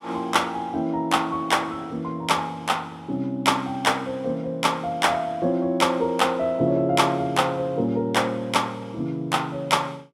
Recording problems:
none

